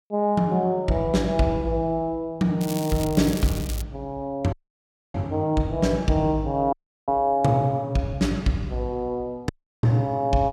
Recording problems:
crackling; from 2.5 to 4 s; loose cable, SNR 12 dB
dropout; at 4.5 s for 0.5 s, at 6.5 s and at 9.5 s

